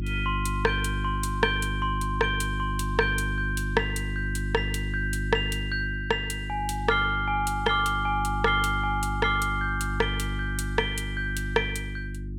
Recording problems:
mains hum; 50 Hz, harmonics up to 350 Hz, SNR 4 dB

